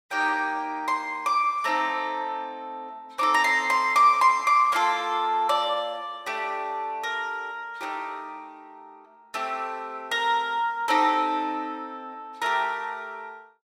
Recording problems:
none

